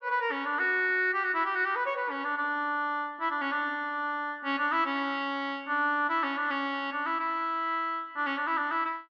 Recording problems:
low-pass filter; nothing above 8 kHz

